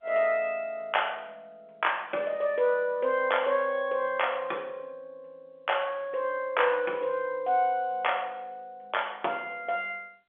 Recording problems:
phone line; 340 Hz to 3.4 kHz, G.711

